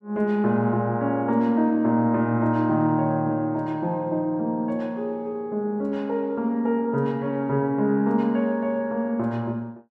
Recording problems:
none

